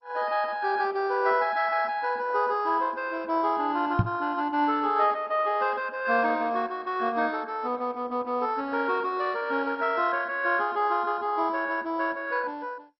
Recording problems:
lossy codec; MP2, log-spectral distance 3 dB, nothing above 4.8 kHz
microphone bump; at 4 s; peak +7 dB vs average level

